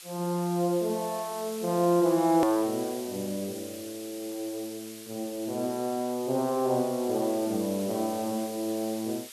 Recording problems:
background hiss; slope +3 dB per octave, SNR 14 dB
hard cut with a click; at 2.5 s

